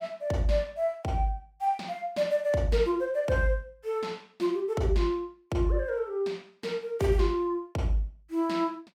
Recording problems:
none

